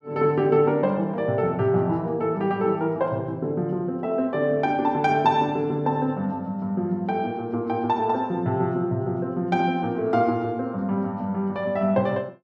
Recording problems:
none

